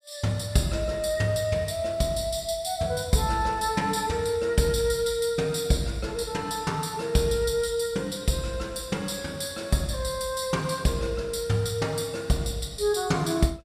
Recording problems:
none

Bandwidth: 15 kHz